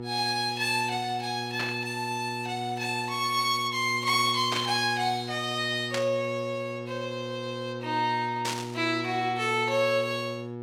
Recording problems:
electrical hum; 60 Hz, harmonics up to 1.3 kHz, SNR 10 dB
burst of static; 4 times, first at 1.5 s; peak +1 dB vs average level

